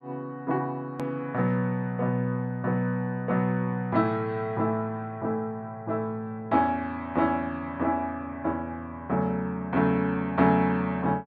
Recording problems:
hard cut with a click; at 1 s

